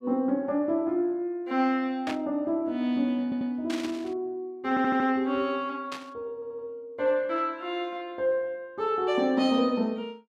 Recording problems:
burst of static; at 2 s, at 3.5 s and at 6 s; peak -4 dB vs average level
audio stuttering; at 3 s, at 4.5 s and at 6.5 s

